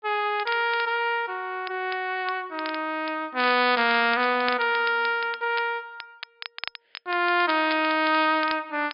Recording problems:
treble missing; nothing above 5.1 kHz
crackling; vinyl, SNR 15 dB

